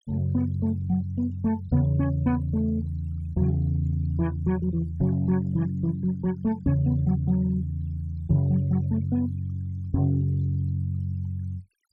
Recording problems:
noise reduction artefacts; signal-to-artefact ratio 27 dB

